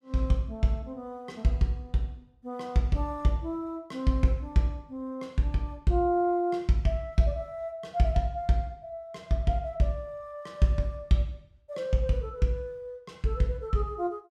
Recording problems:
none

